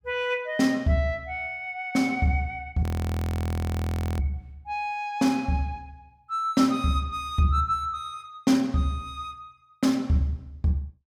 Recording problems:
audio freezing; at 3 s for 1.5 s

